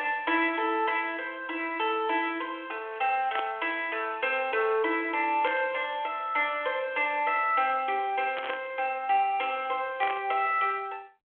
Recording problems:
phone line; 280 Hz to 3.3 kHz, G.726
burst of static; 4 times, first at 3.5 s; peak -4 dB vs average level

